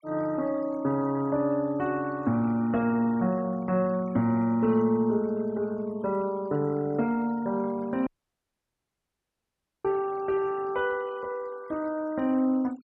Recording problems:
denoising artefacts; signal-to-artefact ratio 25 dB
dropout; at 8 s for 2 s

